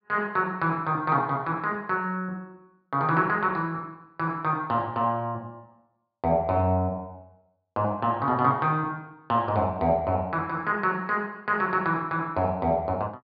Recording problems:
treble cut off; nothing above 4.9 kHz

